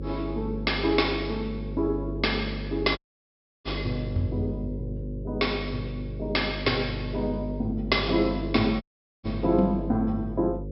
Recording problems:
treble cut off; nothing above 5.4 kHz
electrical hum; 50 Hz, harmonics up to 550 Hz, SNR 7 dB
dropout; at 3 s for 0.5 s and at 9 s

